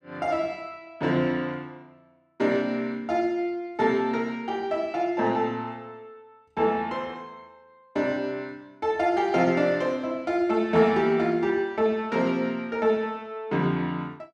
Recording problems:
none

